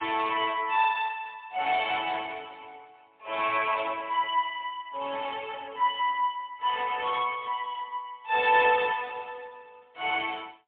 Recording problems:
phone line; 340 Hz to 3.6 kHz, AMR-NB, then MP3

